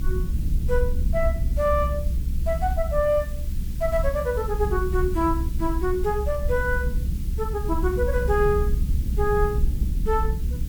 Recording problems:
hiss; SNR 20 dB
low-frequency rumble; below 66 Hz, SNR 1 dB

